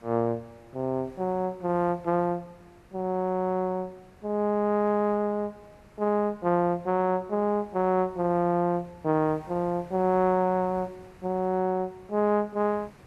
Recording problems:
background hiss; SNR 26 dB

